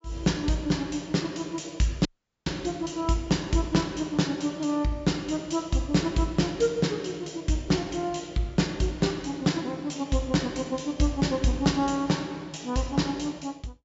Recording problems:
treble cut off; nothing above 8 kHz
audio cutting out; at 2 s

